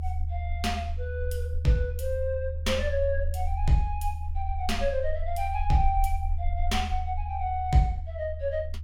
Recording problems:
low-frequency rumble; below 78 Hz, SNR 3 dB

